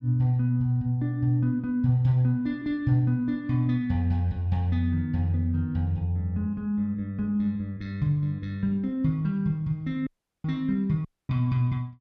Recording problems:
dropout; at 10 s and at 11 s

